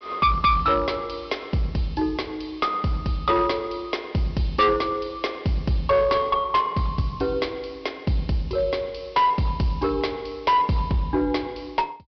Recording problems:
treble cut off; nothing above 5.5 kHz
distorted audio; hard clipping, uneven, signal-to-distortion ratio 11 dB

